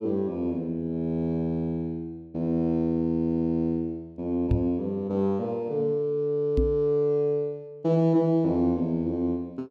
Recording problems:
microphone thump; at 4.5 s and at 6.5 s; peak +5 dB vs average level

